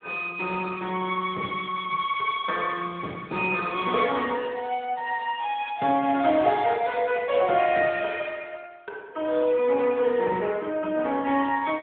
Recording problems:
phone line; 240 Hz to 3.5 kHz, AMR-NB

